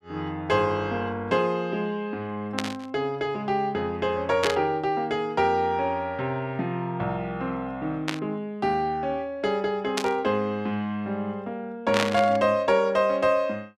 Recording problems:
burst of static; 5 times, first at 2.5 s; peak +4 dB vs average level

